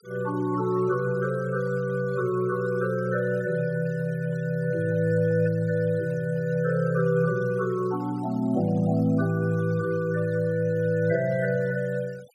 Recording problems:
noise reduction artefacts; signal-to-artefact ratio 26 dB

